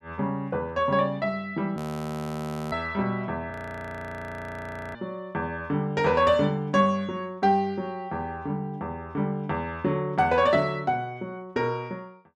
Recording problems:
audio freezing; at 2 s for 1 s and at 3.5 s for 1.5 s

